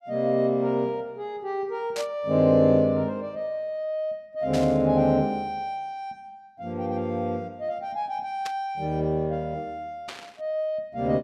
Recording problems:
burst of static; 4 times, first at 2 s; peak -5 dB vs average level

